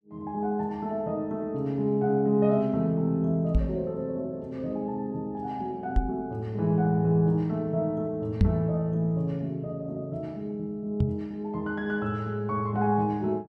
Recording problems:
microphone thump; 4 times, first at 3.5 s; peak +9 dB vs average level

